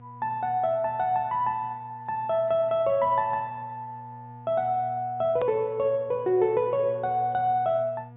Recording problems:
treble cut off; nothing above 4 kHz
electrical hum; 60 Hz, harmonics up to 1.2 kHz, SNR 20 dB
hard cut with a click; at 5.5 s

